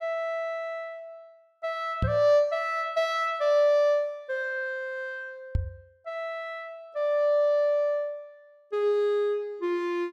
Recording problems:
knock on the microphone; at 2 s and at 5.5 s; peak +4 dB vs average level

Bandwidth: 14.5 kHz